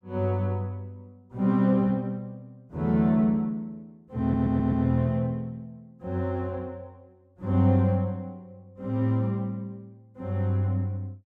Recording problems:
audio stuttering; at 4 s

